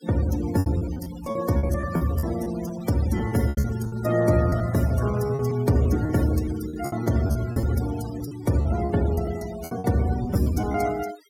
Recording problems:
denoising artefacts; signal-to-artefact ratio 16 dB
packet loss; 13% of the sound replaced, filled with repeated pitch periods

